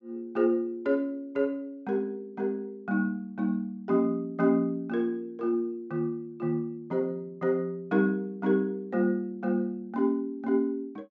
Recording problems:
treble missing; nothing above 8 kHz

